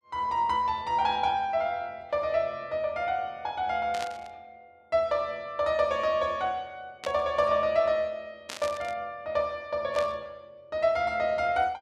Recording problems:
burst of static; 4 times, first at 4 s; peak -4 dB vs average level

